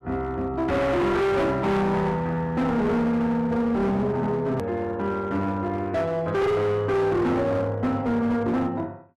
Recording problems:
distortion; hard clipping, uneven, signal-to-distortion ratio 7 dB
click at an edit; at 4.5 s

